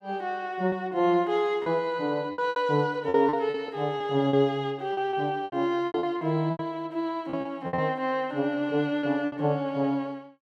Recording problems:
packet loss; 10% of the sound replaced, filled with repeated pitch periods

